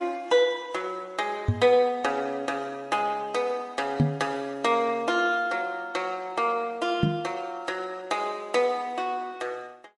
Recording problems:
lossy codec; MP3, then MP3, log-spectral distance 2 dB
knock on the microphone; at 1.5 s, at 4 s and at 7 s; peak +8 dB vs average level

